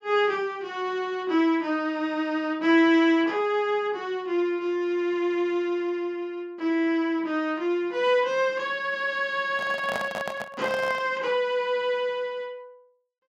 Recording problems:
handling noise; from 9.5 to 11 s; peak -2 dB vs average level

